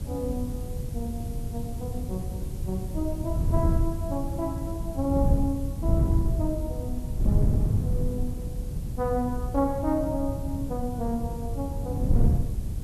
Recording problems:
hiss; slope +1 dB per octave, SNR 18 dB
wind noise; below 130 Hz, SNR -2 dB

